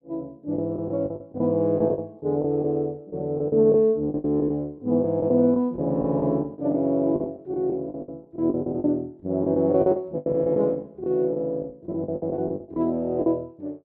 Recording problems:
lost packets; 15% of the sound replaced, filled with the last packet

